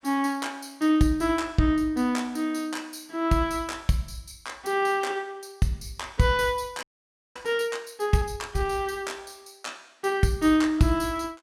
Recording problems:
frozen audio; at 7 s for 0.5 s

